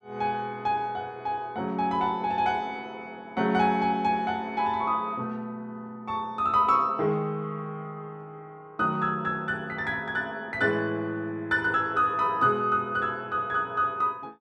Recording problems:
none

